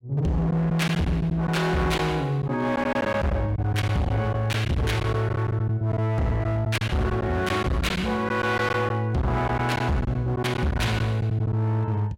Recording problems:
distorted audio; hard clipping, signal-to-distortion ratio 7 dB
packet loss; 7% of the sound replaced, filled with silence

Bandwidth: 16.5 kHz